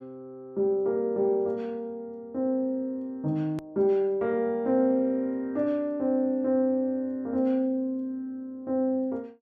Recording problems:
edit click; at 3.5 s

